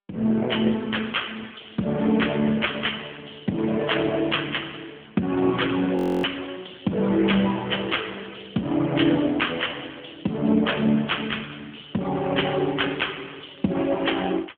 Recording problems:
telephone audio; 150 Hz to 3.5 kHz, AMR-NB
crackle; from 1 to 2.5 s, from 3.5 to 5 s and from 10 to 12 s; loose cable, SNR 29 dB
audio freezing; at 6 s

